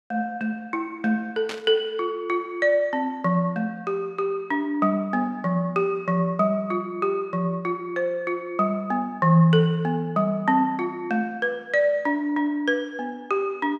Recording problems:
burst of static; at 1.5 s; peak -5 dB vs average level

